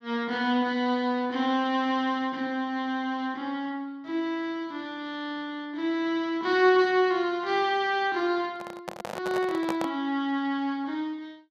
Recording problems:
microphone handling noise; from 8.5 to 10 s; peak -1 dB vs average level

